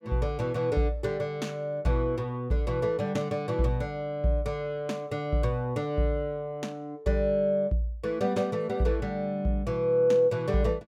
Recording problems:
none

